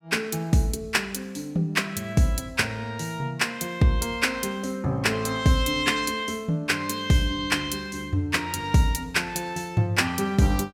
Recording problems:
none

